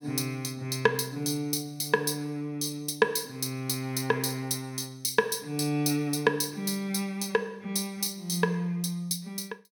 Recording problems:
none

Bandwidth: 17.5 kHz